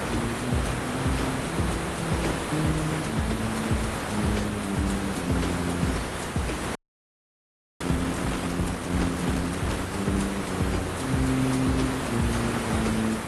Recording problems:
lossy codec; Opus, then AAC, log-spectral distance 10 dB, nothing above 11.3 kHz
electrical hum; 50 Hz, harmonics up to 300 Hz, SNR 24 dB
hiss; slope -6 dB per octave, SNR 2 dB
wind on the microphone; below 400 Hz, SNR 21 dB
frozen audio; at 7 s for 1 s

